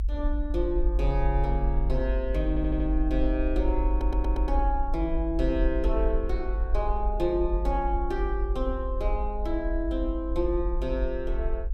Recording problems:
rumble; below 50 Hz, strongest tone 48 Hz, SNR 0 dB
audio stuttering; at 2.5 s and at 4 s

